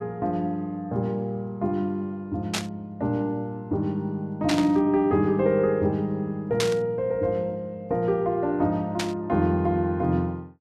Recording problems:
static burst; 4 times, first at 2.5 s; peak +3 dB vs average level

